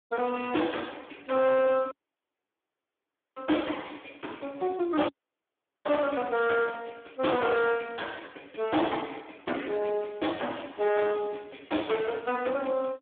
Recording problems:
phone line; 260 Hz to 3.5 kHz, Speex
distorted audio; hard clipping, signal-to-distortion ratio 10 dB
audio cutting out; at 2 s for 1.5 s and at 5 s for 1 s

